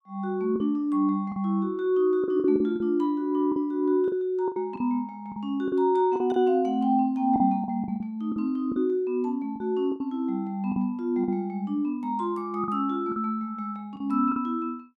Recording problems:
packet loss; 8% of the sound replaced, filled with the last packet

